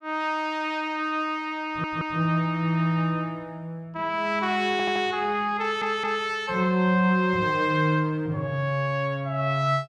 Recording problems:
stutter; at 1.5 s, at 4.5 s and at 5.5 s

